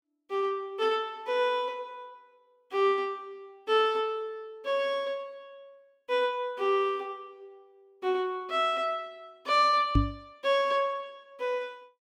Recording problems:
knock on the microphone; at 10 s; peak +8 dB vs average level

